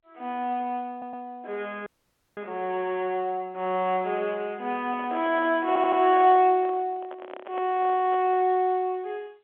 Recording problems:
phone line; 220 Hz to 3.6 kHz, G.711
audio stuttering; at 1 s and at 5.5 s
frozen audio; at 2 s for 0.5 s
handling noise; from 5 to 8.5 s; peak -9 dB vs average level

